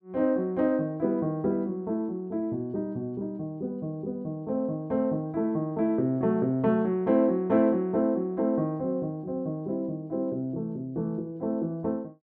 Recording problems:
none

